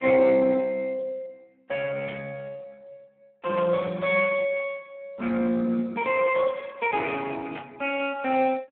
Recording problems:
telephone audio; 190 Hz to 3.3 kHz, Speex
static burst; at 2 s, at 3.5 s and at 7.5 s; peak -9 dB vs average level

